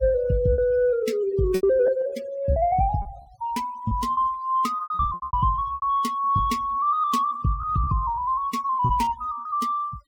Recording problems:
denoising artefacts; signal-to-artefact ratio 22 dB
lost packets; 10% of the sound replaced, filled with repeated pitch periods

